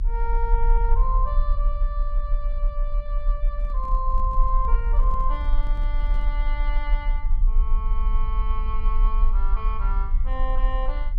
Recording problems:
rumble; below 40 Hz, strongest tone 28 Hz, SNR -8 dB
microphone handling noise; from 3.5 to 6.5 s; peak -5 dB vs average level

